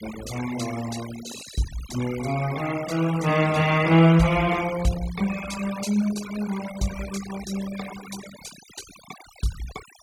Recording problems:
noise reduction artefacts; signal-to-artefact ratio 14 dB

